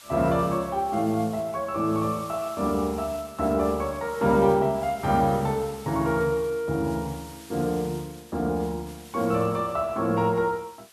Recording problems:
hiss; slope +2 dB per octave, SNR 20 dB

